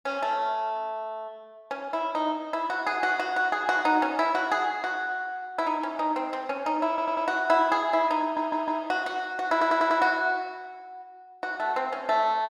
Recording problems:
audio stuttering; at 7 s, at 8 s and at 9.5 s

